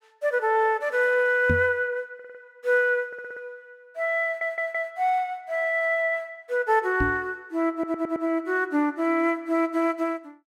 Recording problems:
microphone bump; at 1.5 s and at 7 s; peak +2 dB vs average level
audio stuttering; 4 times, first at 2 s

